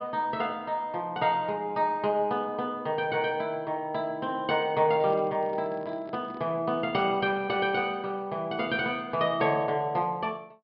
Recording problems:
treble cut off; nothing above 5.5 kHz
microphone handling noise; from 5 to 6.5 s; peak -9 dB vs average level

